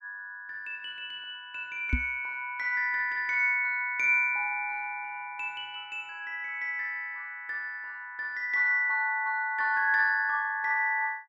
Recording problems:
knock on the microphone; at 2 s; peak +4 dB vs average level

